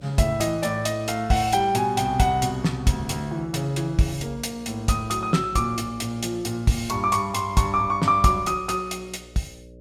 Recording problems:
electrical hum; 60 Hz, harmonics up to 600 Hz, SNR 23 dB

